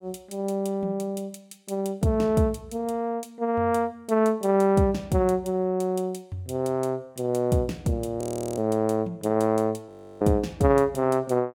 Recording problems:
audio freezing; at 8 s and at 10 s

